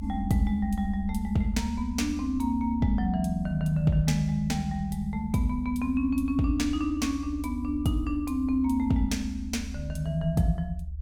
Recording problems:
rumble; below 74 Hz, strongest tone 74 Hz, SNR 10 dB

